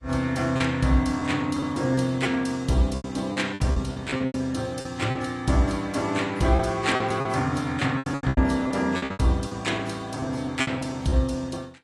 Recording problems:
codec artefacts; AAC, log-spectral distance 3 dB, nothing above 11 kHz
lost packets; 12% of the sound replaced, filled with repeated pitch periods

